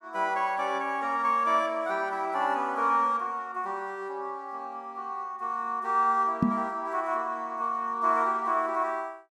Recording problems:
microphone bump; at 6.5 s; peak +7 dB vs average level

